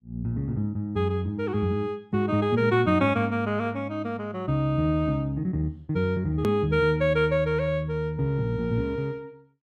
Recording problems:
edit click; at 6.5 s

